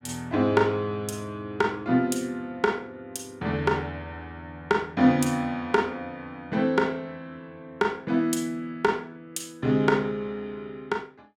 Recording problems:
none

